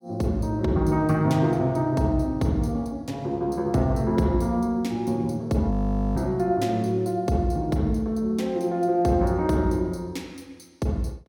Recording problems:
audio freezing; at 5.5 s

